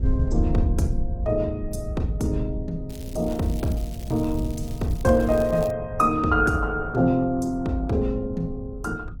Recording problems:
lossy codec; Opus, log-spectral distance 2 dB, nothing above 18.9 kHz
rumble; below 88 Hz, SNR 8 dB
crackle; from 3 to 5.5 s; loose cable, SNR 22 dB

